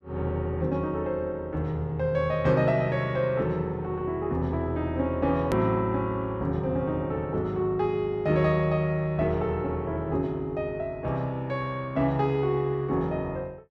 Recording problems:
hard cut with a click; at 5.5 s

